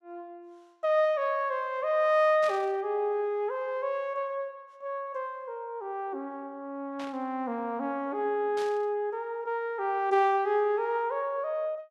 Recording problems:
burst of static; at 2.5 s, at 7 s and at 8.5 s; peak -10 dB vs average level

